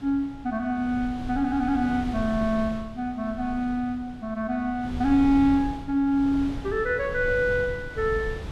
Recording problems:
wind on the microphone; below 190 Hz, SNR 12 dB

